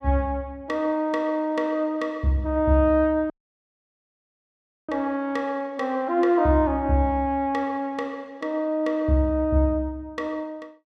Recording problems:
audio cutting out; at 3.5 s for 1.5 s

